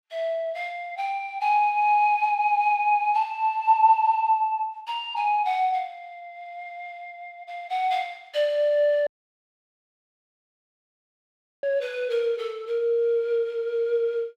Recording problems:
dropout; at 9 s for 2.5 s

